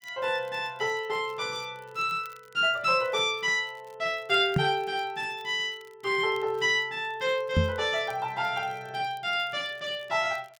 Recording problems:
crackling; vinyl, SNR 30 dB
microphone thump; at 4.5 s and at 7.5 s; peak +7 dB vs average level

